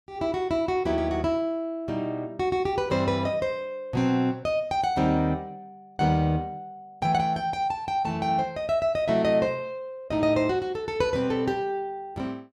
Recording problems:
none

